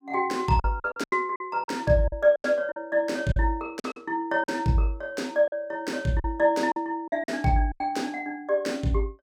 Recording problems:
lost packets; 10% of the sound replaced, filled with silence

